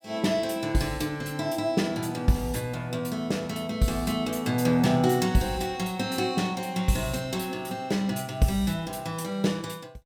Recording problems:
none

